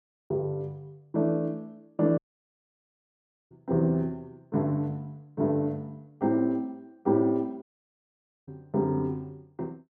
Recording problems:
dropout; at 2 s for 1.5 s and at 7.5 s for 1 s

